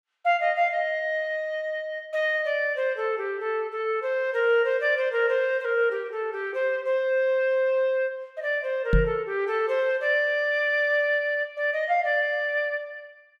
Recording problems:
microphone bump; at 9 s; peak +6 dB vs average level

